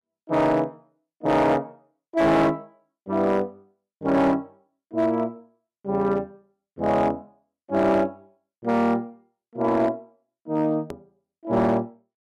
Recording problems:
distortion; hard clipping, signal-to-distortion ratio 12 dB
edit click; at 11 s

